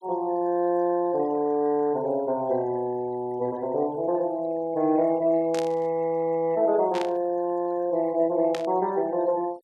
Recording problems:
denoising artefacts; signal-to-artefact ratio 28 dB
static burst; at 5.5 s, at 7 s and at 8.5 s; peak -7 dB vs average level

